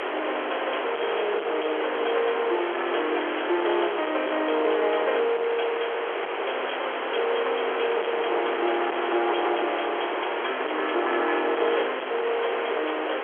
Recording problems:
phone line; 320 Hz to 3.3 kHz, G.711
distortion; soft clipping, signal-to-distortion ratio 11 dB
hiss; SNR 2 dB

